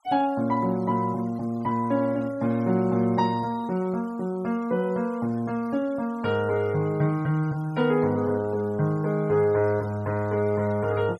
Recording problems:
noise reduction artefacts; signal-to-artefact ratio 25 dB

